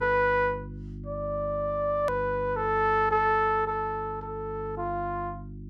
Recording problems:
hum; 50 Hz, harmonics up to 350 Hz, SNR 13 dB
hard cut with a click; at 2 s

